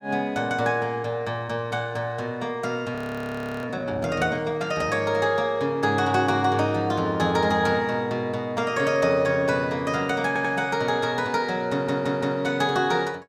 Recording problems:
frozen audio; at 3 s for 0.5 s
audio stuttering; at 10 s and at 12 s

